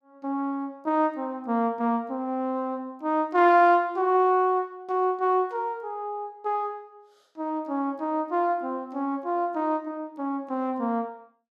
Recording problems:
none

